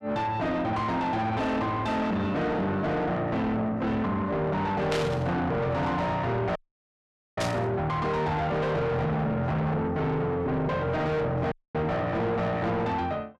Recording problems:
distortion; soft clipping, signal-to-distortion ratio 5 dB
static burst; at 5 s and at 7.5 s; peak -1 dB vs average level
audio cutting out; at 6.5 s for 1 s and at 12 s

